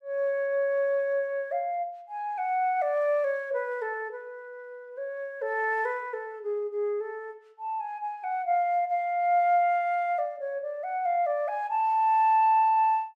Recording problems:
none

